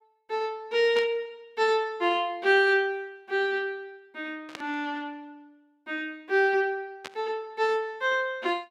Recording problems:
static burst; at 1 s, at 4.5 s and at 7 s; peak -7 dB vs average level

